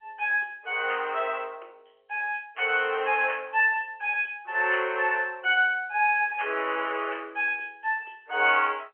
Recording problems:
telephone audio; 340 Hz to 3.2 kHz, G.711

